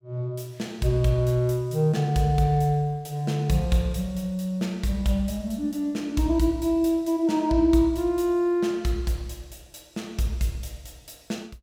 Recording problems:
none

